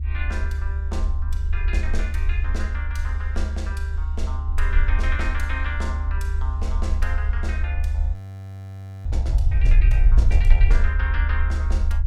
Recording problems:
low-frequency rumble; below 72 Hz, SNR -10 dB
audio freezing; at 8 s for 1 s

